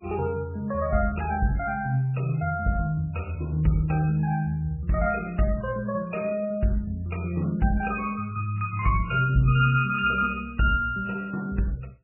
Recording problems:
lossy codec; MP3, log-spectral distance 3 dB, nothing above 2.5 kHz

